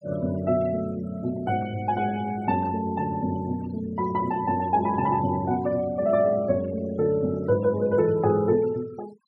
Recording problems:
denoising artefacts; signal-to-artefact ratio 22 dB

